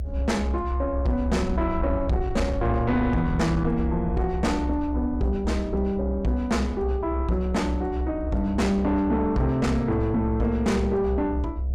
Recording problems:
distorted audio; soft clipping, signal-to-distortion ratio 11 dB
hum; 60 Hz, harmonics up to 720 Hz, SNR 21 dB
low-frequency rumble; below 68 Hz, strongest tone 64 Hz, SNR 5 dB

